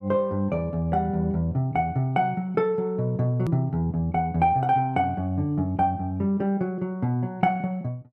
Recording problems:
hard cut with a click; at 3.5 s

